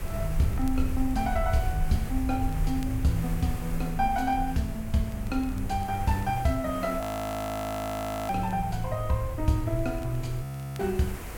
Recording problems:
hiss; slope -5 dB per octave, SNR 14 dB
rumble; below 72 Hz, SNR 7 dB
crackling; vinyl, SNR 29 dB
audio freezing; at 7 s for 1.5 s and at 10 s

